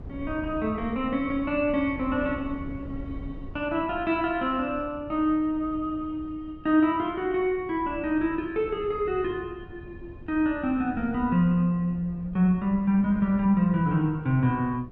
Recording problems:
wind noise; below 180 Hz, SNR 17 dB

